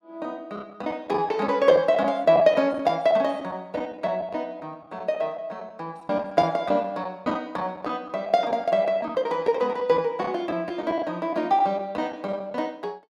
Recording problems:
lost packets; 7% of the sound replaced, filled with the last packet

